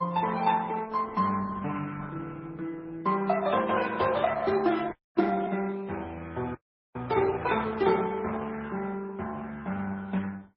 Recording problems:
lossy codec; Opus, then MP3, log-spectral distance 3 dB, nothing above 5.3 kHz
audio freezing; at 5 s and at 6.5 s

